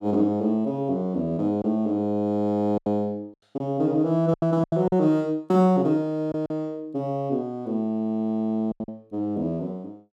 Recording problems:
lost packets; 5% of the sound replaced, filled with silence

